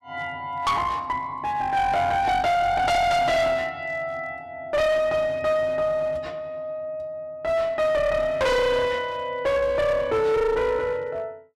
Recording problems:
distortion; hard clipping, uneven, signal-to-distortion ratio 6 dB

